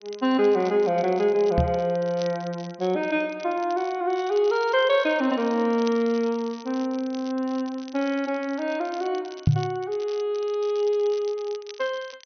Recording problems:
treble cut off; nothing above 6.2 kHz
crackling; vinyl, SNR 22 dB
microphone bump; at 1.5 s and at 9.5 s; peak +8 dB vs average level

